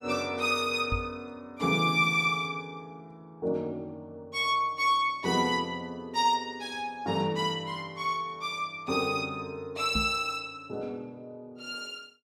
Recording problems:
microphone bump; at 1 s and at 10 s; peak 0 dB vs average level

